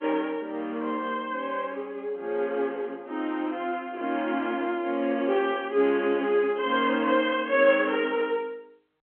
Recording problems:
telephone audio; 240 Hz to 3.3 kHz, G.711

